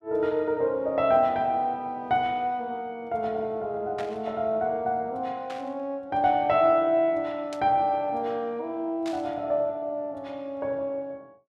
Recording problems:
static burst; 4 times, first at 4 s; peak -9 dB vs average level

